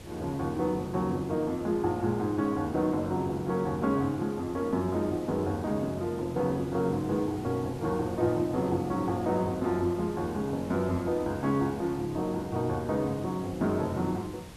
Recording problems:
background hiss; slope -4 dB per octave, SNR 17 dB

